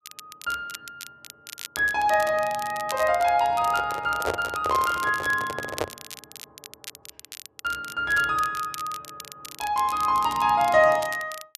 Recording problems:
crackle; vinyl, SNR 16 dB
handling noise; from 3.5 to 6 s; peak +1 dB vs average level

